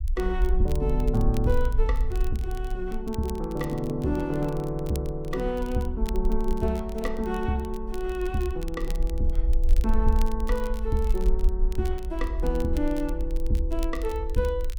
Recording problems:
rumble; below 48 Hz, SNR 1 dB
crackling; vinyl, SNR 19 dB

